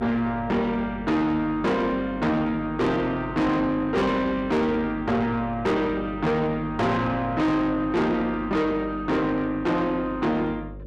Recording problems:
distortion; soft clipping, signal-to-distortion ratio 7 dB
mains hum; 50 Hz, harmonics up to 600 Hz, SNR 16 dB

